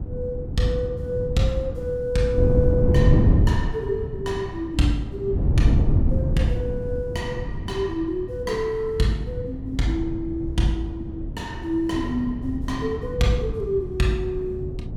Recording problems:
wind on the microphone; below 150 Hz, SNR 0 dB

